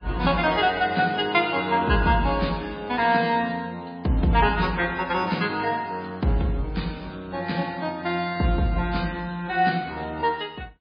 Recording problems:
lossy codec; MP3, log-spectral distance 4 dB, nothing above 5 kHz

